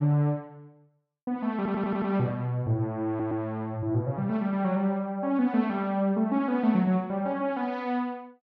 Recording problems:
stutter; at 1.5 s and at 3 s

